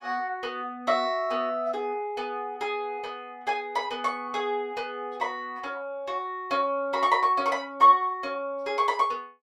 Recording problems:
none

